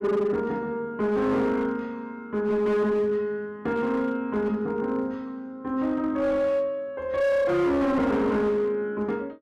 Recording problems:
distorted audio; hard clipping, signal-to-distortion ratio 11 dB

